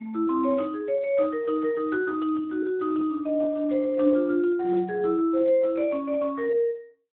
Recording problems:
telephone audio; 240 Hz to 3.4 kHz, Speex

